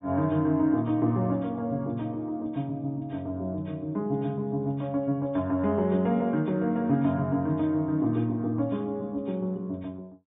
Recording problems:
low-pass filter; nothing above 4 kHz

